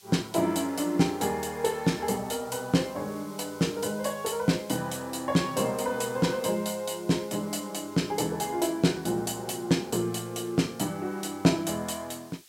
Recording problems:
hiss; SNR 22 dB

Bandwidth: 16 kHz